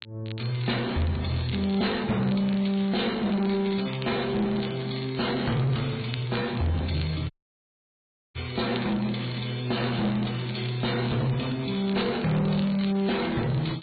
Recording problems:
treble missing; nothing above 4.4 kHz
lossy codec; MP3, then MP3, log-spectral distance 7 dB
distorted audio; soft clipping, signal-to-distortion ratio 10 dB
crackle; vinyl, SNR 19 dB
dropout; at 7.5 s for 1 s

